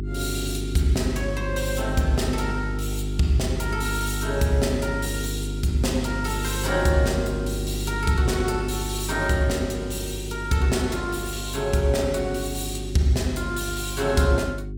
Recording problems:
hum; 50 Hz, harmonics up to 400 Hz, SNR 6 dB

